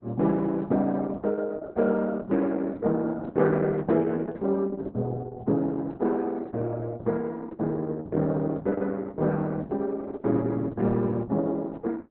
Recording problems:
lossy compression; Opus, log-spectral distance 3 dB, nothing above 3.9 kHz

